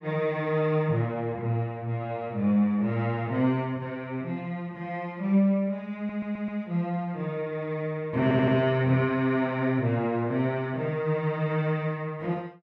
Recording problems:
audio stuttering; at 6 s and at 8 s

